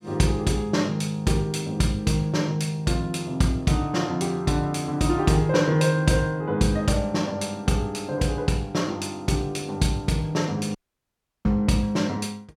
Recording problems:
audio cutting out; at 11 s for 0.5 s

